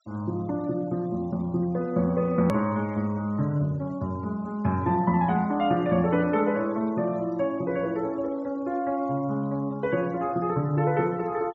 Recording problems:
treble missing; nothing above 8 kHz
denoising artefacts; signal-to-artefact ratio 28 dB
click at an edit; at 2.5 s

